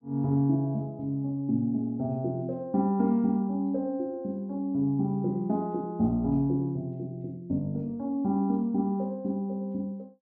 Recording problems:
none

